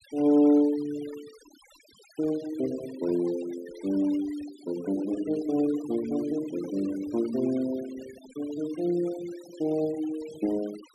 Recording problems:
denoising artefacts; signal-to-artefact ratio 20 dB

